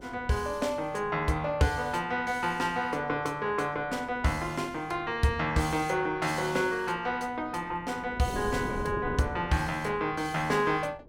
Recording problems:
wind noise; below 430 Hz, SNR 15 dB

